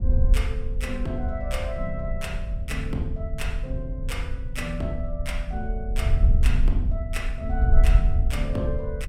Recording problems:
wind on the microphone; below 64 Hz, SNR -5 dB

